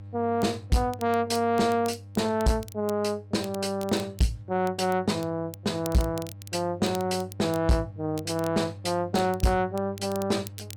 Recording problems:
distortion; soft clipping, signal-to-distortion ratio 11 dB
hum; 50 Hz, harmonics up to 600 Hz, SNR 17 dB
crackling; vinyl, SNR 19 dB

